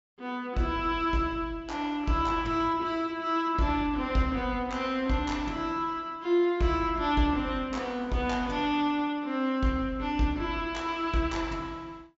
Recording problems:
treble missing; nothing above 8 kHz

